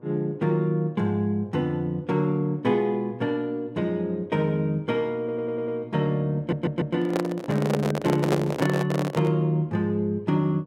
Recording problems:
electrical hum; 60 Hz, harmonics up to 1.2 kHz, SNR 28 dB
stutter; at 5 s and at 6.5 s
handling noise; from 6.5 to 9.5 s; peak +4 dB vs average level

